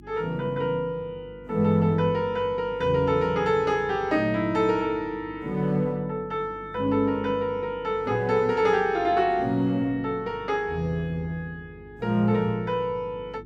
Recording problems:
hum; 50 Hz, harmonics up to 350 Hz, SNR 22 dB

